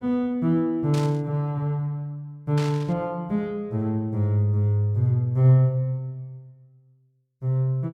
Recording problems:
static burst; at 1 s and at 2.5 s; peak -9 dB vs average level

